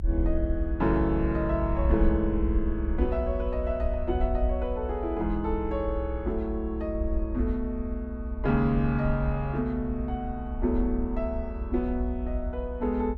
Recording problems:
low-frequency rumble; below 64 Hz, SNR 3 dB

